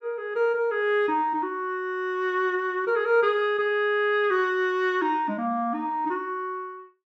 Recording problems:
none

